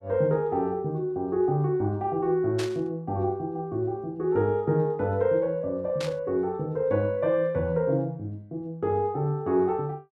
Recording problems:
static burst; at 2.5 s and at 6 s; peak -5 dB vs average level

